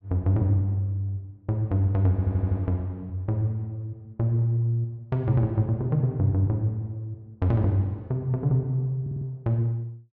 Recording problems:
stutter; at 2 s and at 9 s

